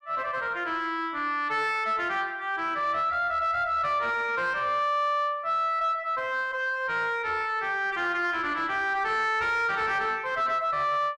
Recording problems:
distortion; soft clipping, signal-to-distortion ratio 10 dB

